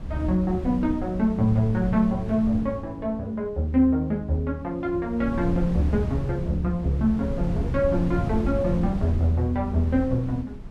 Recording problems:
wind on the microphone; below 170 Hz, SNR 8 dB

